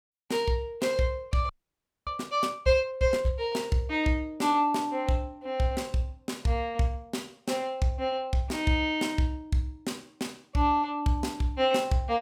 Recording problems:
audio freezing; at 1.5 s for 0.5 s

